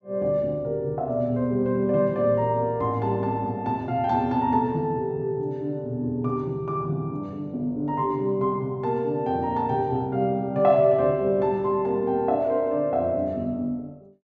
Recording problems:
none

